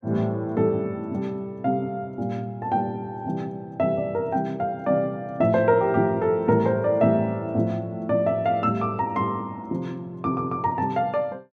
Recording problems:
none

